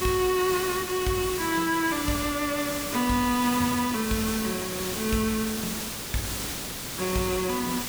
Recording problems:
hiss; slope -2 dB per octave, SNR 4 dB

